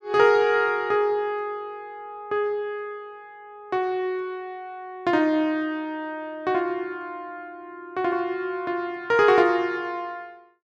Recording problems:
none

